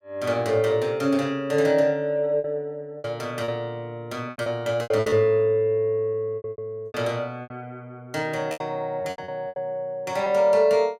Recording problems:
lost packets; 10% of the sound replaced, filled with repeated pitch periods

